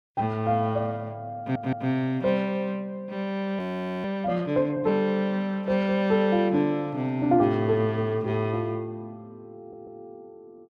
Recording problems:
stutter; at 1.5 s and at 9.5 s
audio freezing; at 3.5 s

